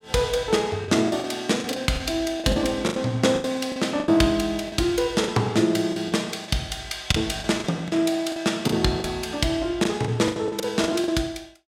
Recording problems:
lost packets; 13% of the sound replaced, filled with the last packet

